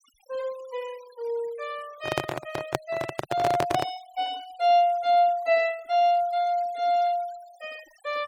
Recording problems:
noise reduction artefacts; signal-to-artefact ratio 23 dB
microphone handling noise; from 2 to 4 s; peak +3 dB vs average level

